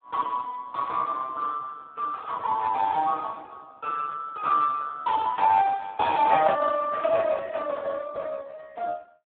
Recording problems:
telephone audio; 220 Hz to 3 kHz, Speex

